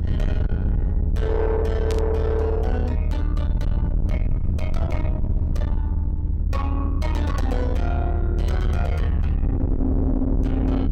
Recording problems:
distorted audio; soft clipping, signal-to-distortion ratio 8 dB
rumble; below 92 Hz, SNR -3 dB
burst of static; at 2 s; peak -3 dB vs average level

